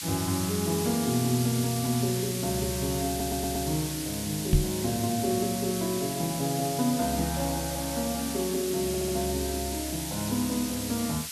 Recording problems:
background hiss; slope +6 dB per octave, SNR 5 dB
audio stuttering; at 3 s and at 9 s
microphone bump; at 4.5 s; peak +10 dB vs average level

